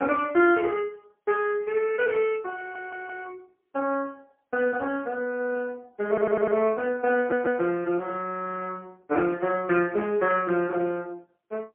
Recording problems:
telephone audio; 280 Hz to 3.1 kHz, AMR-NB, then MP3
audio stuttering; at 2.5 s, at 6 s and at 7 s

